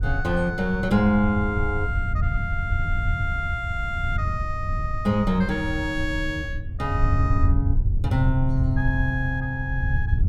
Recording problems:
low-frequency rumble; below 92 Hz, SNR 2 dB

